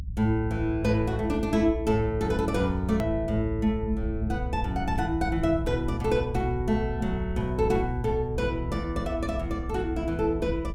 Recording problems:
low-frequency rumble; below 82 Hz, SNR 7 dB
hard cut with a click; at 3 s

